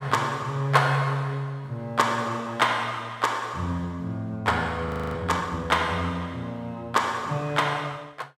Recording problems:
frozen audio; at 5 s

